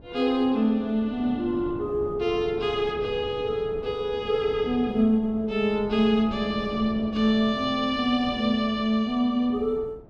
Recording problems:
wind on the microphone; below 420 Hz, SNR 16 dB

